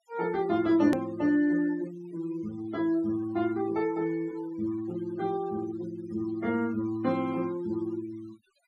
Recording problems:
noise reduction artefacts; signal-to-artefact ratio 22 dB
click at an edit; at 1 s

